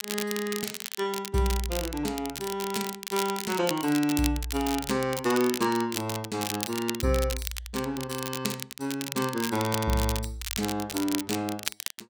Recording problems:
crackle; vinyl, SNR 5 dB

